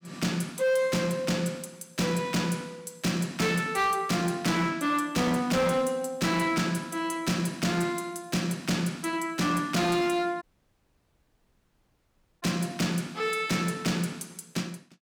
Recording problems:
distorted audio; hard clipping, signal-to-distortion ratio 10 dB
dropout; at 10 s for 2 s

